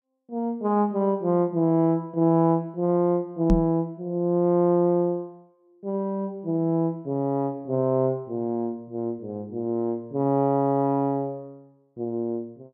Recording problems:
microphone bump; at 3.5 s; peak +7 dB vs average level

